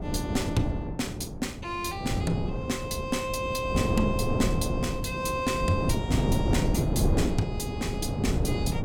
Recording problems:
wind noise; below 320 Hz, SNR -1 dB

